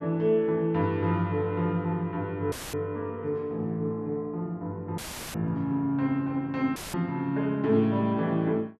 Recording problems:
audio cutting out; at 2.5 s, at 5 s and at 7 s; filled with static

